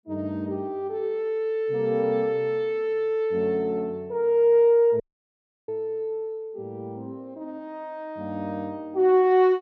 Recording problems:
dropout; at 5 s for 0.5 s

